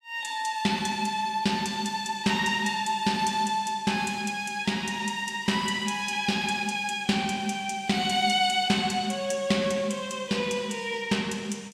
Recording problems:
none

